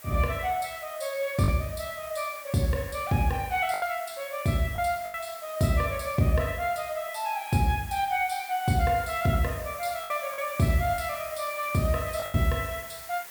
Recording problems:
hiss; SNR 14 dB
lost packets; 3% of the sound replaced, filled with the last packet

